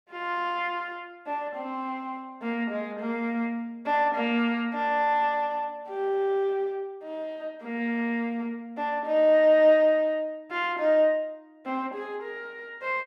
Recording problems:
none

